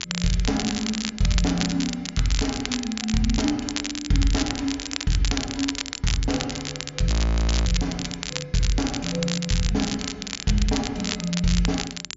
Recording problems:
low-pass filter; nothing above 7.3 kHz
electrical hum; 50 Hz, harmonics up to 400 Hz, SNR 28 dB
crackle; vinyl, SNR 5 dB
audio freezing; at 7 s for 0.5 s

